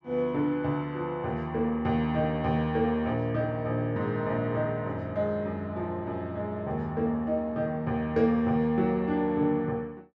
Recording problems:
none

